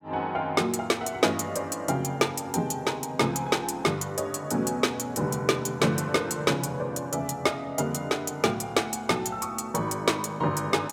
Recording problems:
none

